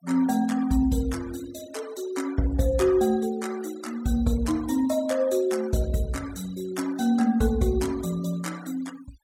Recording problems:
denoising artefacts; signal-to-artefact ratio 19 dB

